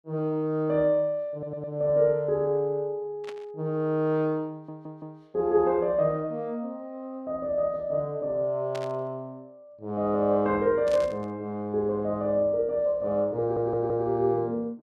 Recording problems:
audio stuttering; at 1.5 s, at 4.5 s and at 13 s
static burst; at 3 s, at 8.5 s and at 11 s; peak -10 dB vs average level

